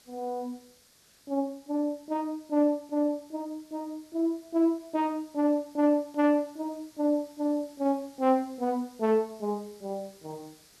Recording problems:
background hiss; SNR 27 dB

